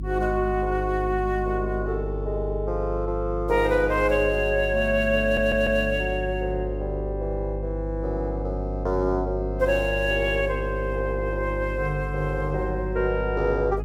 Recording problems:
mains hum; 50 Hz, harmonics up to 400 Hz, SNR 7 dB
stutter; at 5 s

